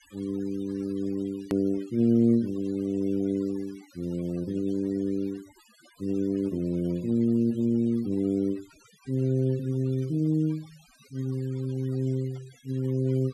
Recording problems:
noise reduction artefacts; signal-to-artefact ratio 25 dB
click at an edit; at 1.5 s

